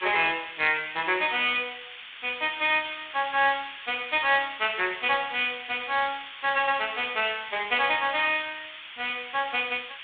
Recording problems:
telephone audio; 260 Hz to 3.6 kHz, G.726
hiss; SNR 13 dB

